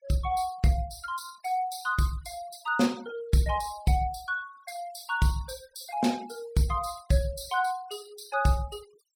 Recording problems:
denoising artefacts; signal-to-artefact ratio 21 dB

